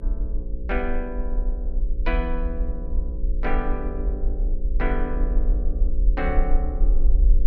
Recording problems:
electrical hum; 60 Hz, harmonics up to 540 Hz, SNR 7 dB
low-frequency rumble; below 44 Hz, strongest tone 22 Hz, SNR -5 dB

